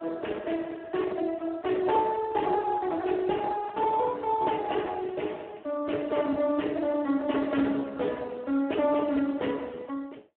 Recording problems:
telephone audio; 240 Hz to 2.8 kHz, Speex

